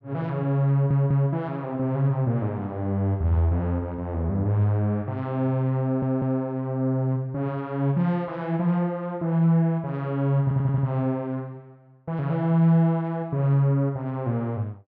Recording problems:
stutter; at 0.5 s, at 6 s and at 10 s

